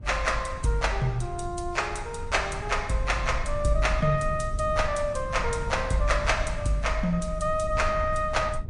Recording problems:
codec artefacts; MP3, log-spectral distance 2 dB, nothing above 8.5 kHz
low-frequency rumble; below 84 Hz, SNR 9 dB

